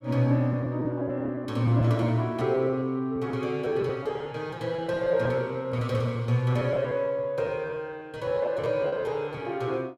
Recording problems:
packet loss; 11% of the sound replaced, filled with repeated pitch periods

